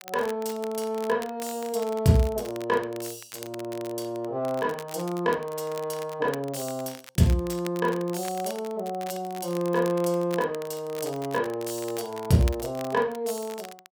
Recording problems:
crackling; vinyl, SNR 17 dB

